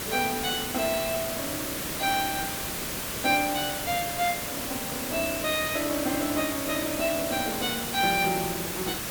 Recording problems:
hiss; slope -2 dB per octave, SNR 2 dB

